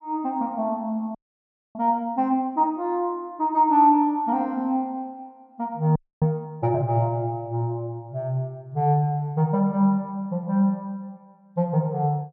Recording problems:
audio freezing; at 1 s for 0.5 s and at 6 s

